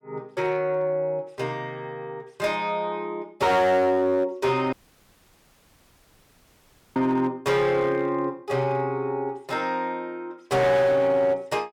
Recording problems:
distorted audio; hard clipping, signal-to-distortion ratio 12 dB
dropout; at 4.5 s for 2 s

